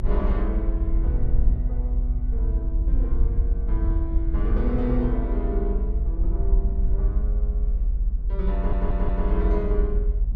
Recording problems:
low-frequency rumble; below 56 Hz, strongest tone 40 Hz, SNR -7 dB
audio stuttering; at 8.5 s

